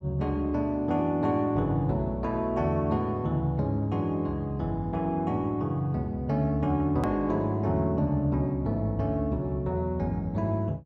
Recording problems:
hard cut with a click; at 7 s

